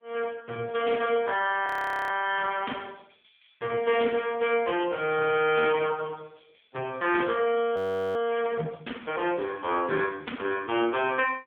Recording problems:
phone line; 280 Hz to 3.3 kHz, AMR-NB
audio freezing; at 1.5 s and at 8 s

